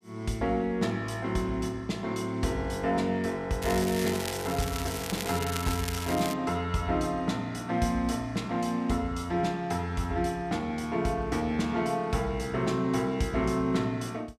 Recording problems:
crackle; from 3.5 to 6.5 s; loose cable, SNR 7 dB

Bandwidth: 14.5 kHz